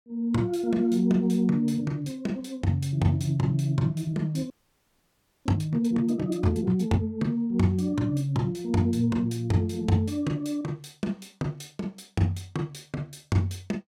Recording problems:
frozen audio; at 4.5 s for 1 s

